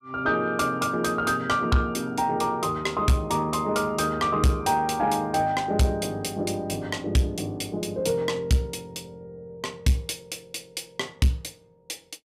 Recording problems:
distorted audio; soft clipping, signal-to-distortion ratio 10 dB

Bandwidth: 15.5 kHz